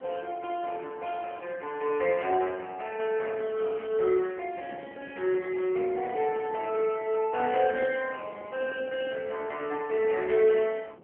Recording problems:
phone line; 320 Hz to 3.1 kHz, AMR-NB
wind noise; below 580 Hz, SNR 20 dB

